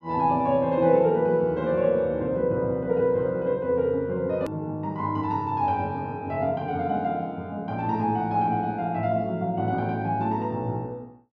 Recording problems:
edit click; at 4.5 s

